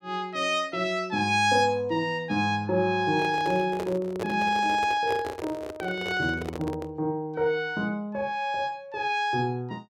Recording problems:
handling noise; from 3 to 7 s; peak -2 dB vs average level

